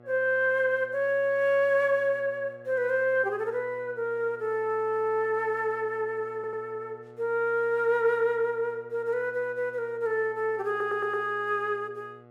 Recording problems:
hum; 60 Hz, harmonics up to 2 kHz, SNR 24 dB
stutter; at 6.5 s and at 11 s

